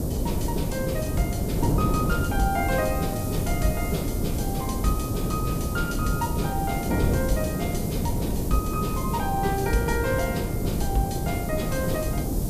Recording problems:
background hiss; slope +6 dB per octave, SNR 9 dB
wind on the microphone; below 290 Hz, SNR -1 dB

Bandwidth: 14.5 kHz